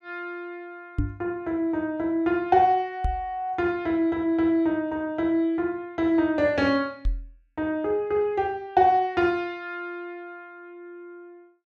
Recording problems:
knock on the microphone; at 1 s, at 3 s and at 7 s; peak +2 dB vs average level

